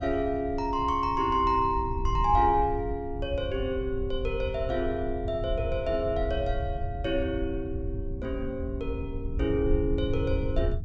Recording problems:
treble missing; nothing above 8 kHz
low-frequency rumble; below 90 Hz, SNR 6 dB

